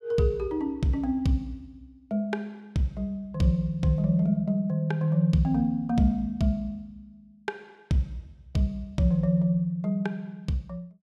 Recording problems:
none

